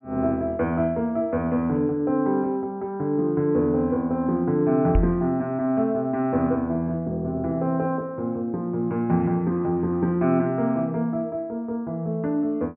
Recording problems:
treble cut off; nothing above 3 kHz
microphone bump; at 5 s; peak +6 dB vs average level

